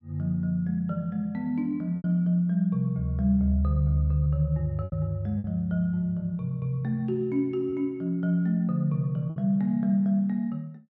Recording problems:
lost packets; 3% of the sound replaced, filled with repeated pitch periods

